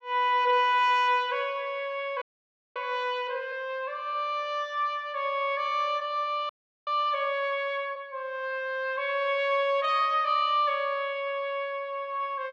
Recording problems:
audio freezing; at 2 s for 0.5 s and at 6.5 s

